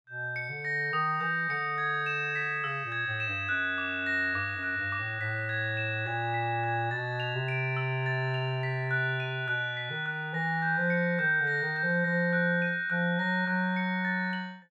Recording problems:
none

